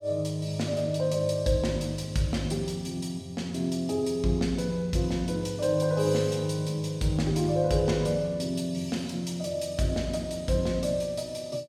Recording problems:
none

